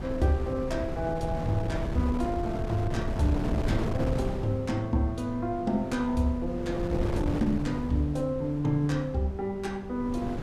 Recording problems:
wind on the microphone; below 280 Hz, SNR 5 dB

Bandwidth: 14.5 kHz